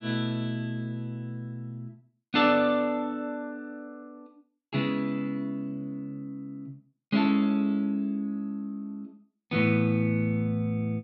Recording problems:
none

